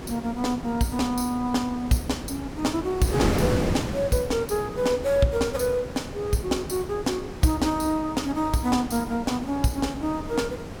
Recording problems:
wind on the microphone; below 550 Hz, SNR 7 dB

